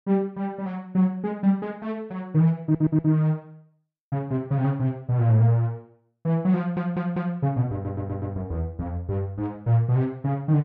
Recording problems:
stutter; at 2.5 s, at 6.5 s and at 7.5 s

